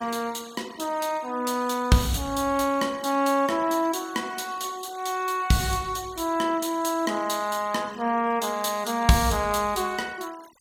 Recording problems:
denoising artefacts; signal-to-artefact ratio 22 dB

